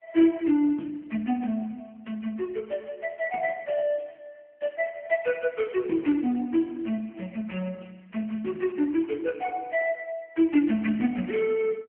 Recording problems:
telephone audio; 170 Hz to 3.1 kHz, AMR-NB

